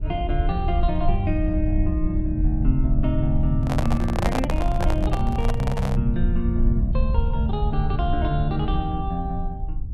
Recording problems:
low-frequency rumble; below 70 Hz, SNR 0 dB
handling noise; from 3.5 to 6 s; peak +4 dB vs average level

